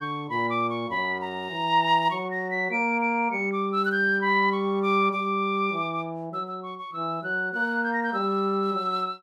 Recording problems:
none

